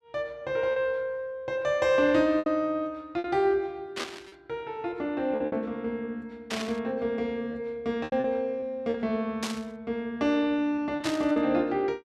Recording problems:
lost packets; 5% of the sound replaced, filled with repeated pitch periods
static burst; 4 times, first at 4 s; peak 0 dB vs average level

